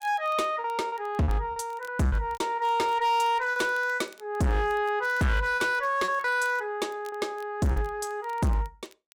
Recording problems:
distorted audio; hard clipping, signal-to-distortion ratio 6 dB
crackling; vinyl, SNR 29 dB
packet loss; 7% of the sound replaced, filled with repeated pitch periods

